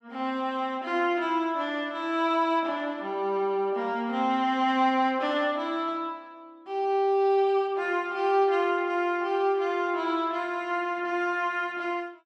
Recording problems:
none

